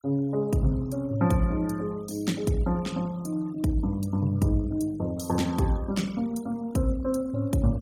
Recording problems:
noise reduction artefacts; signal-to-artefact ratio 22 dB

